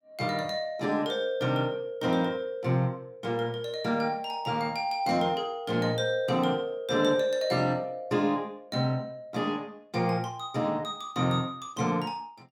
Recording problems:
none

